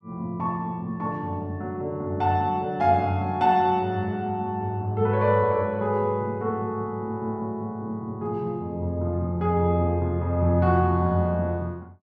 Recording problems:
none

